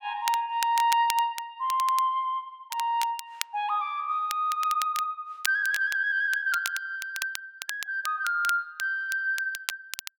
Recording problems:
crackle; vinyl, SNR 10 dB

